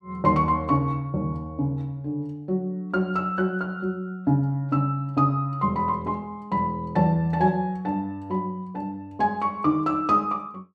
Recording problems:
none

